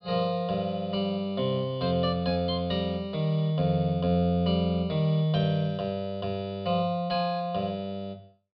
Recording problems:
treble missing; nothing above 5.5 kHz

